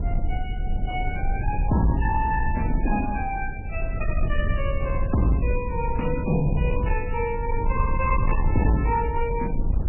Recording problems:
codec artefacts; MP3, log-spectral distance 3 dB, nothing above 2.7 kHz
distortion; soft clipping, signal-to-distortion ratio 12 dB
low-frequency rumble; below 82 Hz, SNR 2 dB
wind on the microphone; below 550 Hz, SNR 20 dB

